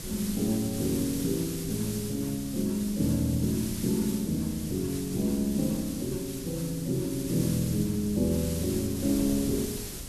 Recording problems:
hiss; slope +2 dB per octave, SNR 9 dB
wind on the microphone; below 250 Hz, SNR 14 dB

